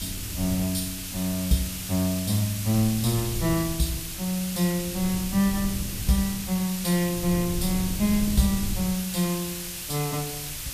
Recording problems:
background hiss; slope +3 dB per octave, SNR 6 dB
wind on the microphone; below 130 Hz, SNR 11 dB

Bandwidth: 14.5 kHz